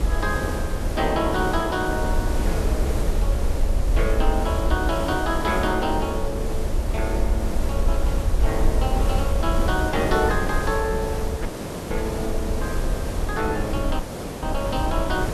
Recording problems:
hiss; SNR 3 dB
low-frequency rumble; below 62 Hz, SNR 1 dB
wind on the microphone; below 190 Hz, SNR 15 dB
audio cutting out; at 11 s and at 14 s

